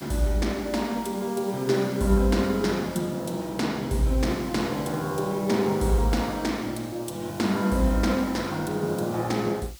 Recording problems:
background hiss; slope +3 dB per octave, SNR 19 dB

